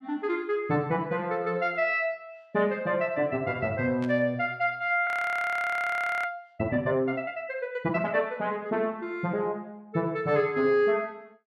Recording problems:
static burst; at 4 s; peak -12 dB vs average level
audio freezing; at 5 s for 1 s

